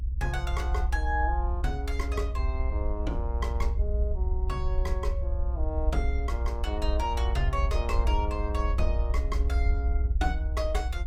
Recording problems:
low-frequency rumble; below 62 Hz, strongest tone 60 Hz, SNR -5 dB

